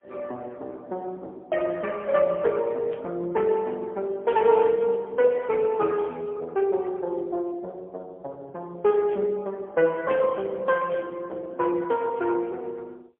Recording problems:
telephone audio; 260 Hz to 3.3 kHz, AMR-NB, then MP3
burst of static; 5 times, first at 3 s; peak -16 dB vs average level

